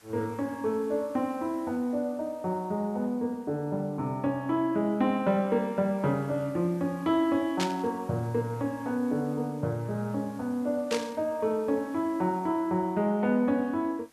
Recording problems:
hiss; slope -1 dB per octave, SNR 27 dB
burst of static; at 7.5 s and at 11 s; peak +1 dB vs average level

